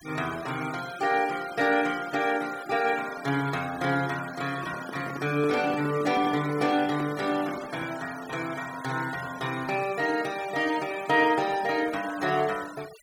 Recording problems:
noise reduction artefacts; signal-to-artefact ratio 16 dB
handling noise; from 4.5 to 8 s; peak -6 dB vs average level

